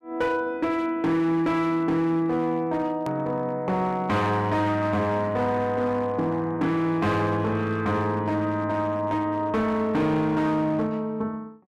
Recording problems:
distortion; hard clipping, signal-to-distortion ratio 12 dB
hard cut with a click; at 3 s

